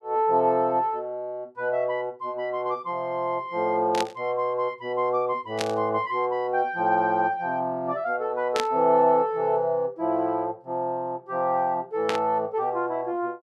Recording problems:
static burst; 4 times, first at 4 s; peak +1 dB vs average level

